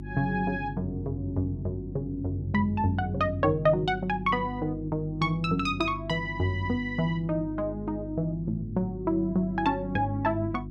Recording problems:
hum; 50 Hz, harmonics up to 350 Hz, SNR 10 dB

